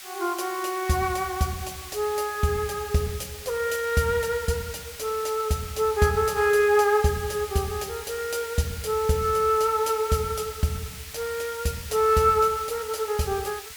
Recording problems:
hiss; SNR 13 dB

